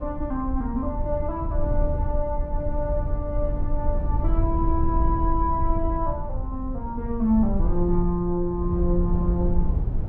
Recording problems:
low-frequency rumble; below 72 Hz, SNR 1 dB

